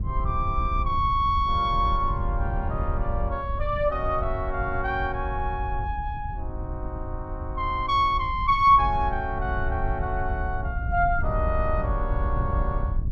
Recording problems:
wind noise; below 86 Hz, SNR 5 dB

